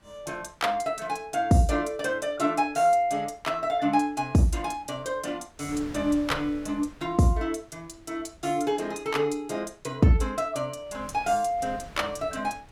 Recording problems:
wind noise; below 820 Hz, SNR 22 dB

